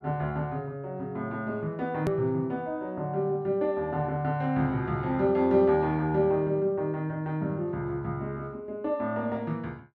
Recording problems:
hard cut with a click; at 2 s

